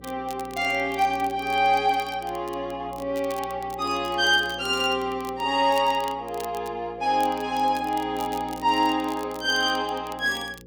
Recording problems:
hum; 60 Hz, harmonics up to 540 Hz, SNR 21 dB
crackling; vinyl, SNR 21 dB

